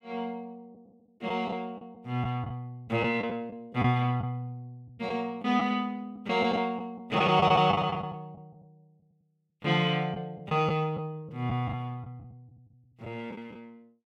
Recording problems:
packet loss; 7% of the sound replaced, filled with the last packet

